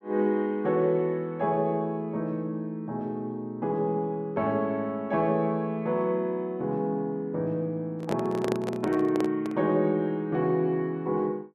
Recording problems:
microphone handling noise; from 8 to 9.5 s; peak +1 dB vs average level

